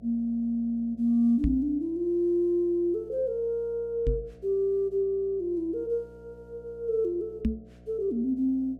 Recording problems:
electrical hum; 60 Hz, harmonics up to 720 Hz, SNR 24 dB
microphone bump; at 1.5 s, at 4 s and at 7.5 s; peak +5 dB vs average level

